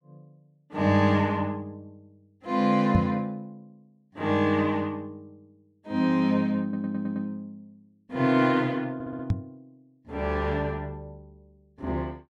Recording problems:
microphone thump; at 3 s and at 9.5 s; peak +6 dB vs average level
stutter; at 6.5 s and at 9 s

